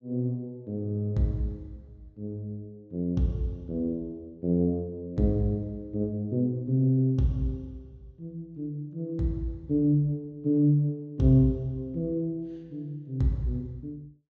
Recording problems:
low-pass filter; nothing above 8 kHz

